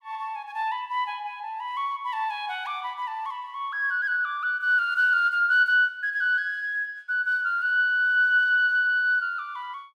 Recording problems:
none

